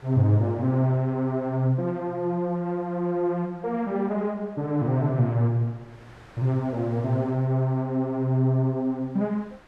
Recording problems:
wind on the microphone; below 1.8 kHz, SNR 28 dB

